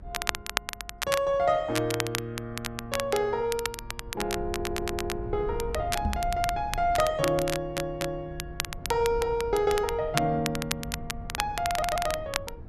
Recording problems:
low-frequency rumble; below 110 Hz, SNR 13 dB
crackle; vinyl, SNR 6 dB
audio stuttering; at 4.5 s, at 7.5 s and at 12 s
microphone bump; at 6 s; peak +3 dB vs average level

